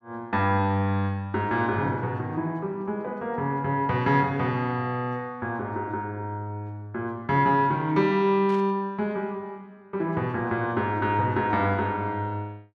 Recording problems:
burst of static; at 8.5 s; peak -14 dB vs average level

